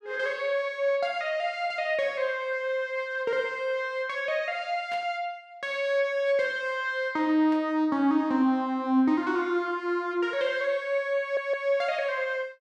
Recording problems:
static burst; at 5 s and at 7.5 s; peak -13 dB vs average level
audio stuttering; at 11 s

